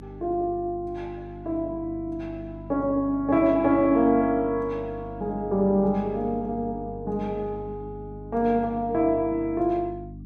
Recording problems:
electrical hum; 50 Hz, harmonics up to 300 Hz, SNR 15 dB

